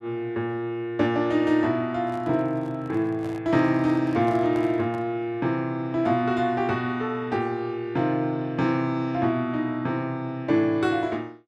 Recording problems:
microphone handling noise; from 2 to 5 s; peak -10 dB vs average level

